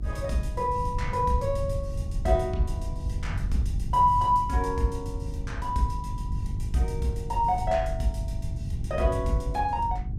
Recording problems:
hum; 50 Hz, harmonics up to 750 Hz, SNR 18 dB
low-frequency rumble; below 100 Hz, SNR 5 dB

